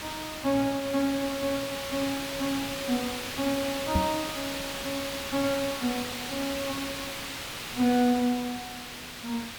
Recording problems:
hiss; SNR 5 dB
microphone bump; at 4 s; peak +7 dB vs average level

